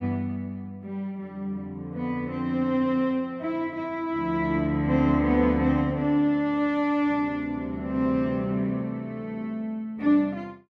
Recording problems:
none

